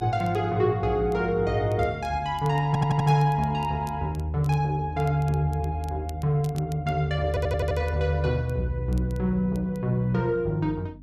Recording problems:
hum; 50 Hz, harmonics up to 300 Hz, SNR 21 dB
crackle; vinyl, SNR 28 dB
audio stuttering; at 2.5 s and at 7.5 s

